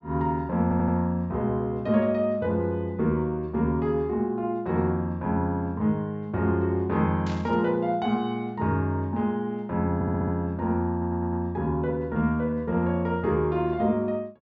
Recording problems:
treble cut off; nothing above 8 kHz
audio stuttering; at 0.5 s, at 10 s and at 11 s
burst of static; at 7.5 s; peak -12 dB vs average level

